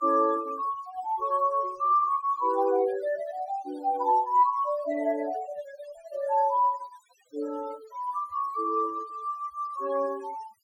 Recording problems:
noise reduction artefacts; signal-to-artefact ratio 20 dB

